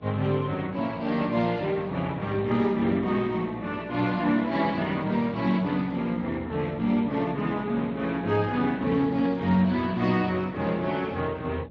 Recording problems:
codec artefacts; Speex, log-spectral distance 3 dB
hum; 60 Hz, harmonics up to 660 Hz, SNR 20 dB

